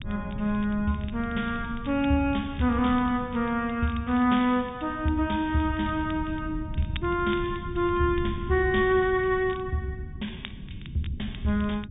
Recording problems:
treble missing; nothing above 3.7 kHz
rumble; below 150 Hz, SNR 12 dB
crackle; vinyl, SNR 23 dB

